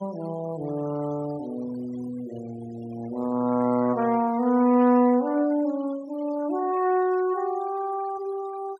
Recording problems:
noise reduction artefacts; signal-to-artefact ratio 21 dB

